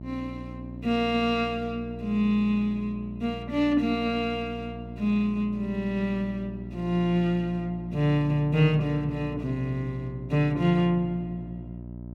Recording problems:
electrical hum; 60 Hz, harmonics up to 720 Hz, SNR 12 dB

